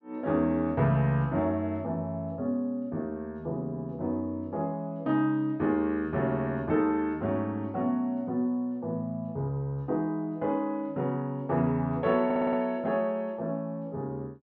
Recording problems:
treble missing; nothing above 7 kHz
audio stuttering; at 12 s

